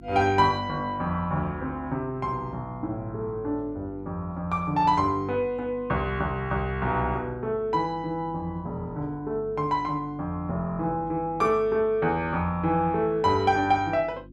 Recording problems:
mains hum; 50 Hz, harmonics up to 350 Hz, SNR 20 dB

